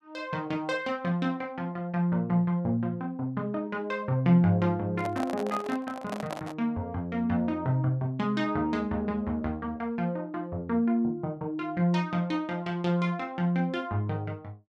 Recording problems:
handling noise; from 5 to 6.5 s; peak -3 dB vs average level

